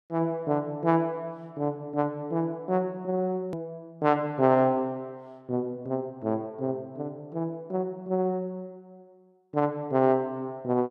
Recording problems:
edit click; at 3.5 s

